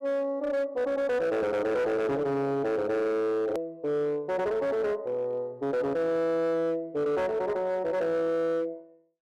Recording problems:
distortion; hard clipping, signal-to-distortion ratio 10 dB
edit click; at 3.5 s

